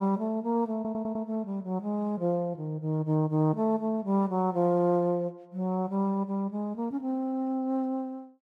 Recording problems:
stutter; at 1 s

